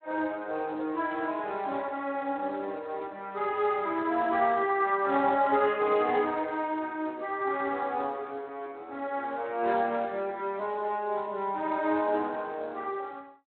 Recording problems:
phone line; 240 Hz to 3.7 kHz, Speex

